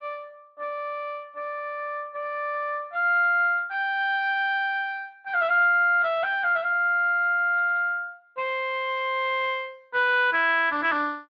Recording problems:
lossy codec; Speex, log-spectral distance 2 dB

